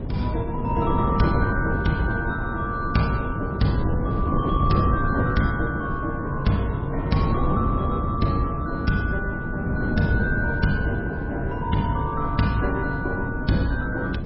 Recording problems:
codec artefacts; MP3, log-spectral distance 2 dB, nothing above 5.5 kHz
wind noise; below 260 Hz, SNR 2 dB

